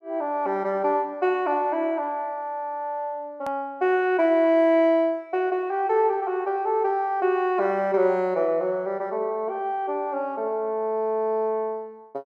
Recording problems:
hard cut with a click; at 3.5 s

